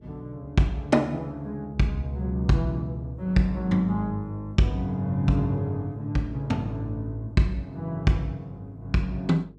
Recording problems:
hum; 50 Hz, harmonics up to 450 Hz, SNR 28 dB

